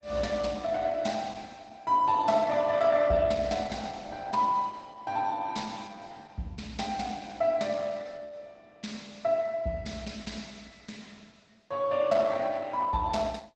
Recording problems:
codec artefacts; Opus, log-spectral distance 4 dB

